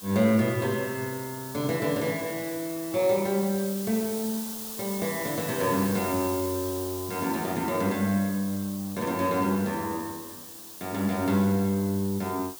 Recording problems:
background hiss; SNR 10 dB

